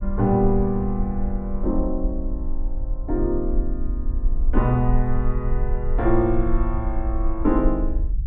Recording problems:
low-frequency rumble; below 44 Hz, strongest tone 22 Hz, SNR 3 dB

